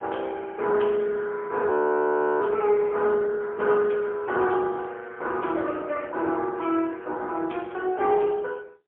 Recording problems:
telephone audio; 280 Hz to 3.8 kHz, AMR-NB, then MP3
frozen audio; at 1.5 s for 0.5 s

